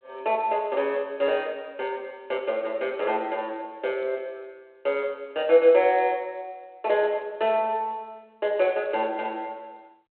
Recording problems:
telephone audio; 340 Hz to 3.4 kHz, G.726

